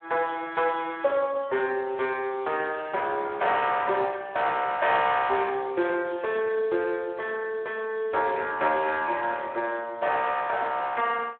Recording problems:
telephone audio; 340 Hz to 3.7 kHz, Speex

